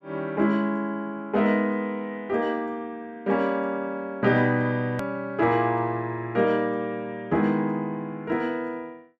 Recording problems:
click at an edit; at 5 s

